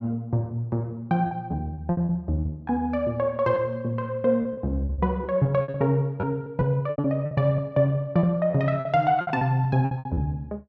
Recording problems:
lost packets; 11% of the sound replaced, filled with repeated pitch periods

